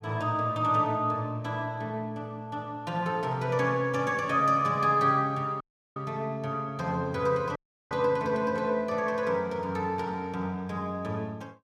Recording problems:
audio cutting out; at 5.5 s and at 7.5 s

